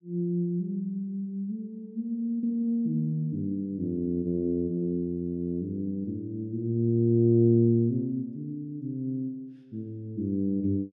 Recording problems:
none

